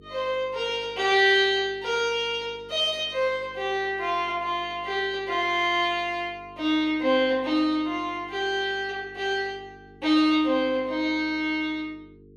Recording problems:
electrical hum; 50 Hz, harmonics up to 450 Hz, SNR 26 dB

